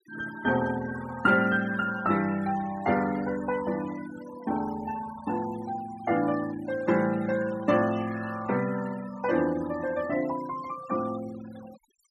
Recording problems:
noise reduction artefacts; signal-to-artefact ratio 17 dB

